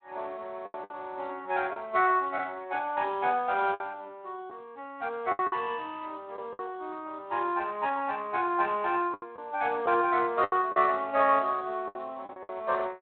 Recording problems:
telephone audio; 240 Hz to 3.5 kHz, Speex
packet loss; 7% of the sound replaced, filled with the last packet

